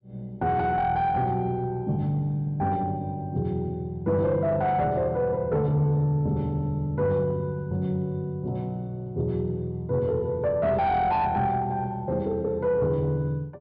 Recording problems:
treble missing; nothing above 5.5 kHz
distortion; soft clipping, signal-to-distortion ratio 11 dB

